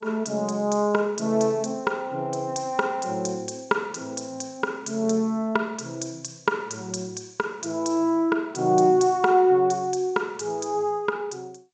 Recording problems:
lossy compression; G.722, log-spectral distance 4 dB, nothing above 7.3 kHz

